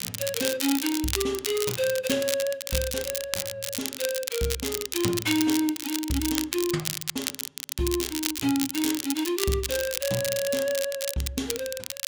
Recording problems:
crackle; vinyl, SNR 2 dB

